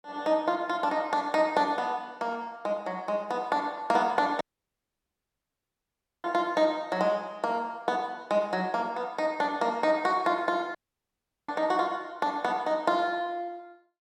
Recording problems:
dropout; at 4.5 s for 2 s and at 11 s for 0.5 s

